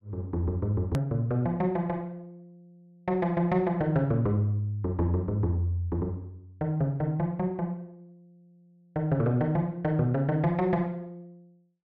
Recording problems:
edit click; at 1 s

